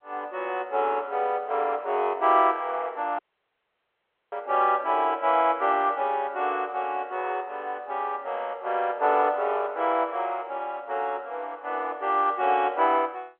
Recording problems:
telephone audio; 340 Hz to 3.3 kHz, G.711
dropout; at 3 s for 1 s

